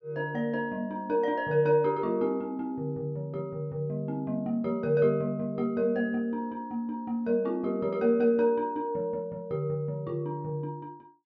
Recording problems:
none

